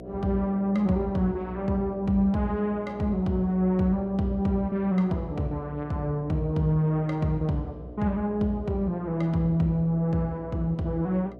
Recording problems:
electrical hum; 60 Hz, harmonics up to 720 Hz, SNR 17 dB

